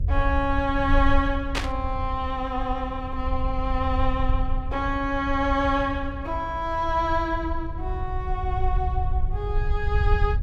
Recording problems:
electrical hum; 60 Hz, harmonics up to 600 Hz, SNR 20 dB
rumble; below 68 Hz, SNR 3 dB
static burst; at 1.5 s; peak +4 dB vs average level

